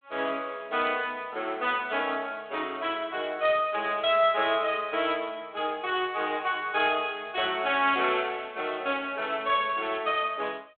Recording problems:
phone line; 190 Hz to 3.6 kHz, G.726

